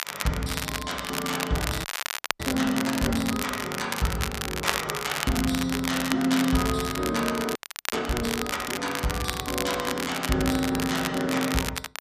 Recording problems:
crackling; vinyl, SNR 4 dB
audio freezing; at 2 s for 0.5 s and at 7.5 s

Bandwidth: 14.5 kHz